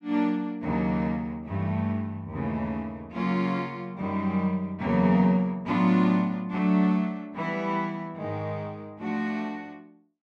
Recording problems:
none

